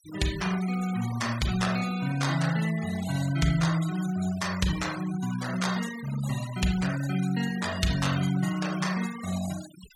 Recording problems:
denoising artefacts; signal-to-artefact ratio 13 dB

